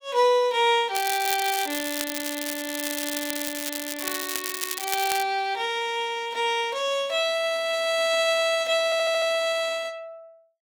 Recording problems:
crackle; from 1 to 5 s; loose cable, SNR 5 dB
audio stuttering; at 9 s

